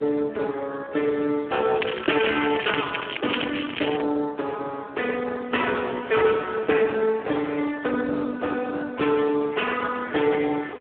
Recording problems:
phone line; 340 Hz to 3.3 kHz, Speex
crackling; from 2 to 4 s; loose cable, SNR 7 dB

